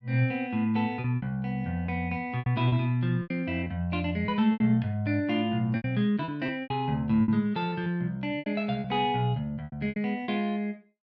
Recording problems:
packet loss; 10% of the sound replaced, filled with repeated pitch periods

